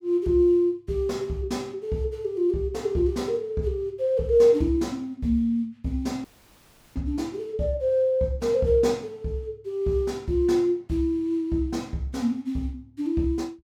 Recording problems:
audio cutting out; at 6 s for 0.5 s

